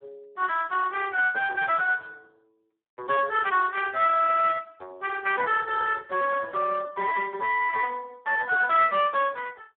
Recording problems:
telephone audio; 370 Hz to 2.6 kHz, Speex

